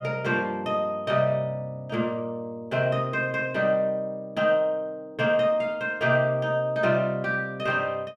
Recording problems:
none

